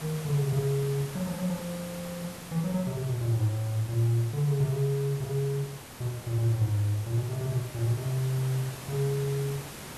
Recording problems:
background hiss; slope -3 dB per octave, SNR 12 dB

